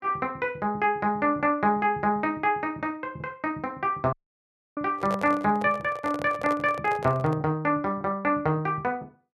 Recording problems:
dropout; at 4 s for 0.5 s
handling noise; from 5 to 7.5 s; peak -2 dB vs average level

